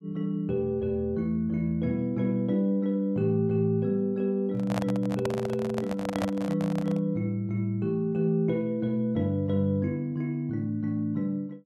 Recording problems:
handling noise; from 4.5 to 7 s; peak 0 dB vs average level

